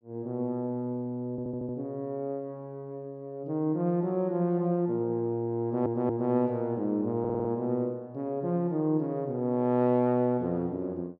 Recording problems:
stutter; at 1.5 s, at 5.5 s and at 7 s

